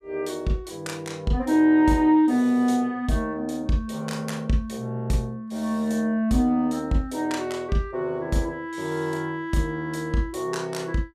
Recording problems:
none

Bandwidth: 14.5 kHz